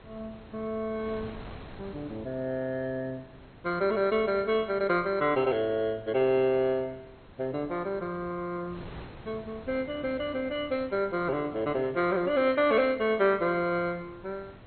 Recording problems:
codec artefacts; MP2, log-spectral distance 2 dB, nothing above 4.2 kHz
wind noise; below 830 Hz, SNR 20 dB

